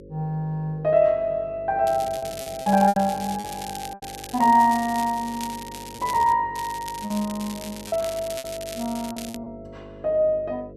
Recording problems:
electrical hum; 50 Hz, harmonics up to 550 Hz, SNR 19 dB
lost packets; 6% of the sound replaced, filled with repeated pitch periods
crackling; from 2 to 6.5 s and from 6.5 to 9.5 s; loose cable, SNR 15 dB

